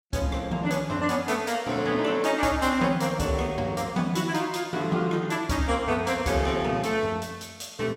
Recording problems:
none

